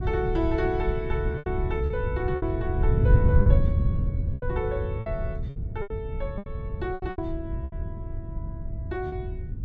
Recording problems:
wind noise; below 110 Hz, SNR -3 dB
lost packets; 9% of the sound replaced, filled with repeated pitch periods

